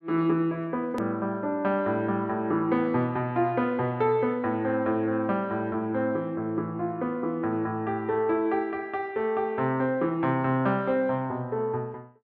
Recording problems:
hard cut with a click; at 1 s

